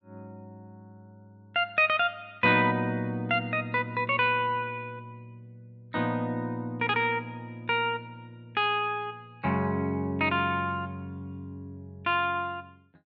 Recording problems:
low-pass filter; nothing above 8 kHz

